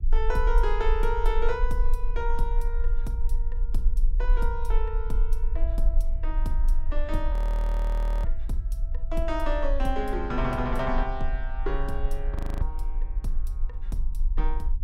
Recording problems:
rumble; below 38 Hz, strongest tone 24 Hz, SNR -3 dB
frozen audio; at 7.5 s for 1 s and at 12 s

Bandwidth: 16 kHz